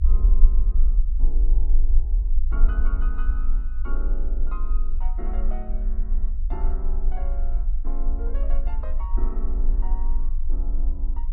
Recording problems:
rumble; below 40 Hz, strongest tone 20 Hz, SNR -15 dB

